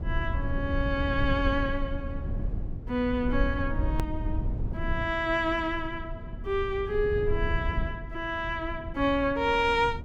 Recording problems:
electrical hum; 60 Hz, harmonics up to 1.1 kHz, SNR 23 dB
low-frequency rumble; below 94 Hz, SNR 5 dB
edit click; at 4 s

